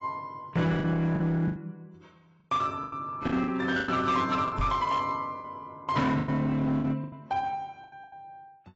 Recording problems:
lossy compression; AAC, log-spectral distance 2 dB, nothing above 7.6 kHz
distorted audio; hard clipping, signal-to-distortion ratio 11 dB
lost packets; 11% of the sound replaced, filled with the last packet
microphone thump; at 4.5 s; peak 0 dB vs average level

